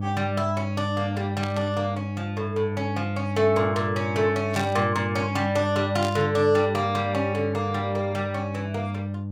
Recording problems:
electrical hum; 50 Hz, harmonics up to 600 Hz, SNR 4 dB
burst of static; at 1.5 s, at 4.5 s and at 6 s; peak -4 dB vs average level

